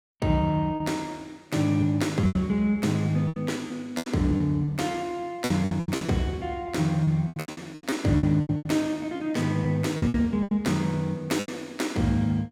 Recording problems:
lost packets; 13% of the sound replaced, filled with repeated pitch periods

